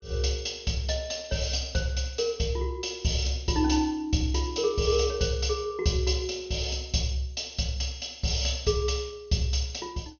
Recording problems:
treble cut off; nothing above 6.5 kHz

